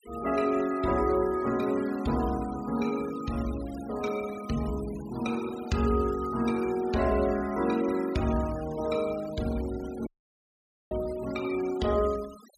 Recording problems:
denoising artefacts; signal-to-artefact ratio 18 dB
dropout; at 10 s for 1 s

